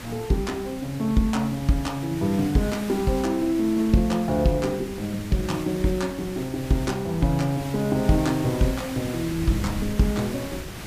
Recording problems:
background hiss; slope -3 dB per octave, SNR 13 dB
wind noise; below 160 Hz, SNR 17 dB

